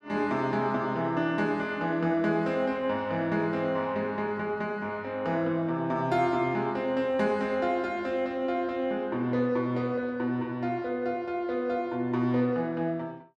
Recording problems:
none

